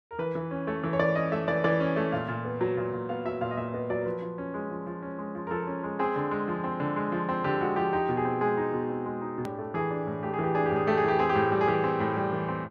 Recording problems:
click at an edit; at 9.5 s

